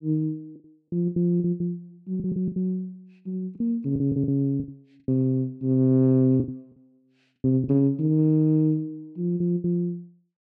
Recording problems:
lost packets; 12% of the sound replaced, filled with the last packet

